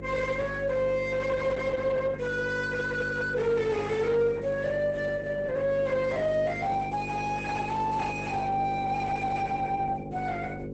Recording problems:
lossy codec; Opus, log-spectral distance 3 dB, nothing above 8 kHz
distorted audio; soft clipping, signal-to-distortion ratio 4 dB
mains hum; 50 Hz, harmonics up to 550 Hz, SNR 10 dB

